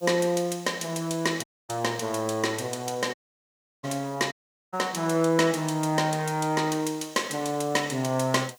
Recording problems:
background hiss; slope +4 dB per octave, SNR 28 dB
dropout; at 1.5 s, at 3 s for 0.5 s and at 4.5 s

